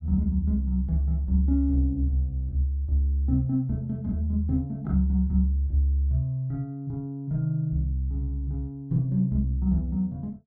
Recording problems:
none

